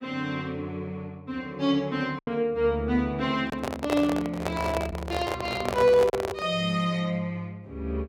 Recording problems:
lost packets; 1.7% of the sound replaced, filled with silence
microphone handling noise; from 3.5 to 6.5 s; peak +2 dB vs average level

